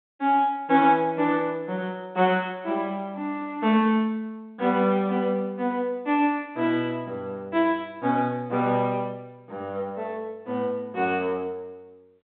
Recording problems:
phone line; 220 Hz to 3.6 kHz, G.726

